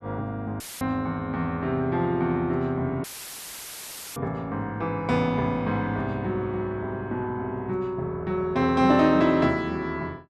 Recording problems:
dropout; at 0.5 s and at 3 s for 1 s; filled with static

